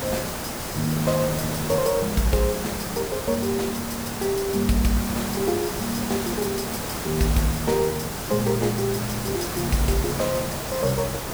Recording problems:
background hiss; slope -4 dB per octave, SNR 4 dB

